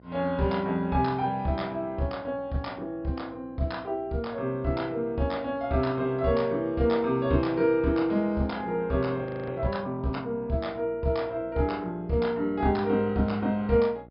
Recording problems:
treble cut off; nothing above 5.5 kHz
hum; 60 Hz, harmonics up to 1.4 kHz, SNR 24 dB
frozen audio; at 9 s

